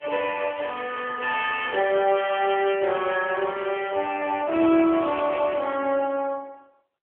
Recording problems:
phone line; 280 Hz to 3.4 kHz, AMR-NB

